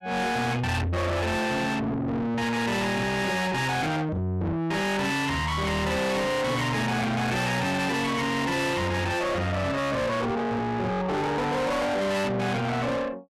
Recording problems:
distorted audio; soft clipping, signal-to-distortion ratio 6 dB

